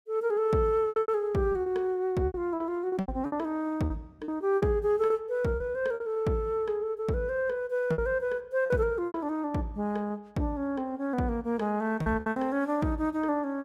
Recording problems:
packet loss; 9% of the sound replaced, filled with repeated pitch periods

